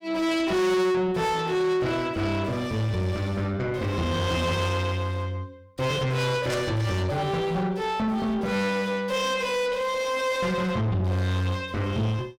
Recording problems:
distorted audio; soft clipping, signal-to-distortion ratio 6 dB
static burst; at 6.5 s; peak -4 dB vs average level

